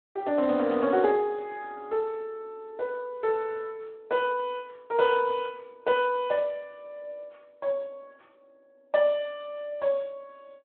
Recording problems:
phone line; 260 Hz to 3.5 kHz, Speex

